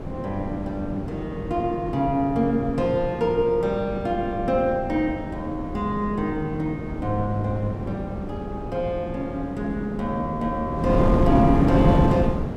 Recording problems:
wind noise; below 340 Hz, SNR 2 dB

